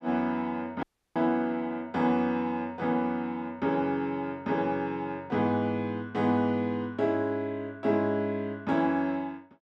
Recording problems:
audio cutting out; at 1 s

